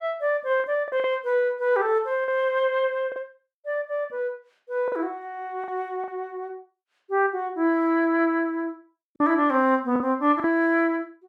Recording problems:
packet loss; 5% of the sound replaced, filled with the last packet

